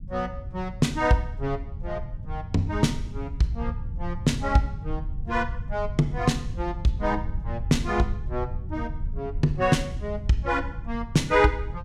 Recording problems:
rumble; below 94 Hz, SNR 8 dB

